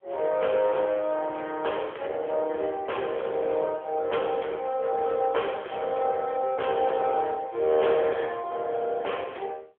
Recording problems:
phone line; 340 Hz to 3.3 kHz, AMR-NB
distortion; hard clipping, uneven, signal-to-distortion ratio 10 dB

